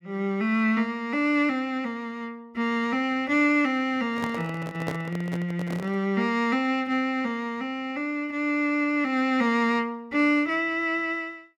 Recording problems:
microphone handling noise; from 4 to 6 s; peak -2 dB vs average level

